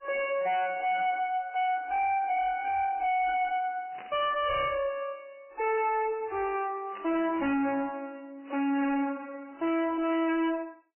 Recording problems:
lossy compression; MP3, then AAC, log-spectral distance 3 dB, nothing above 2.7 kHz
distorted audio; hard clipping, uneven, signal-to-distortion ratio 6 dB
burst of static; 4 times, first at 4 s; peak -12 dB vs average level

